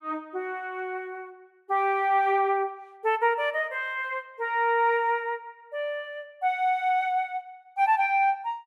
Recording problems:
none

